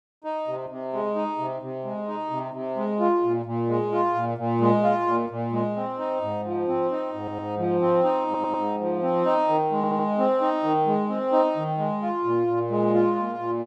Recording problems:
audio stuttering; at 7 s, at 8.5 s and at 10 s

